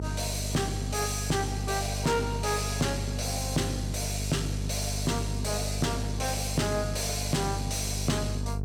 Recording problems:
distorted audio; soft clipping, signal-to-distortion ratio 11 dB
hum; 50 Hz, harmonics up to 500 Hz, SNR 3 dB

